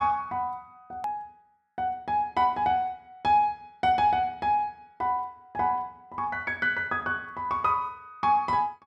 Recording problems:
click at an edit; at 1 s

